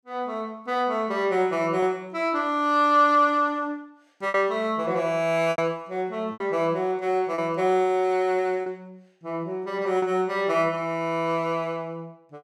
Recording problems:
lost packets; 3% of the sound replaced, filled with repeated pitch periods

